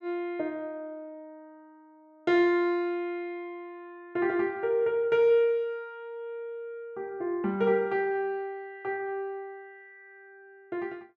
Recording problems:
none

